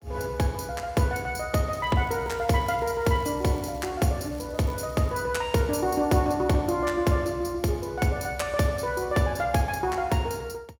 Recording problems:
crackling; from 2 to 4 s and at 4.5 s; loose cable, SNR 27 dB

